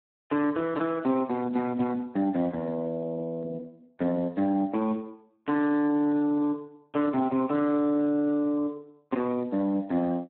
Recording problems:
phone line; 170 Hz to 2.4 kHz, Speex

